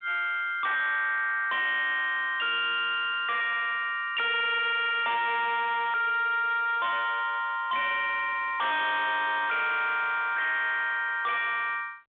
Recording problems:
phone line; 970 Hz to 2.7 kHz, G.726
distorted audio; hard clipping, signal-to-distortion ratio 5 dB

